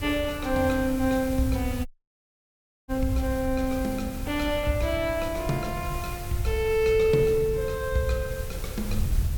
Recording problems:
hiss; slope -2 dB per octave, SNR 16 dB
wind noise; below 90 Hz, SNR 9 dB
dropout; at 2 s for 1 s

